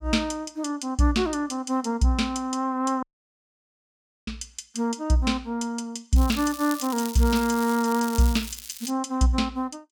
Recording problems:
dropout; at 3 s for 1 s
crackling; at 6 s and from 7 to 9 s; loose cable, SNR 12 dB

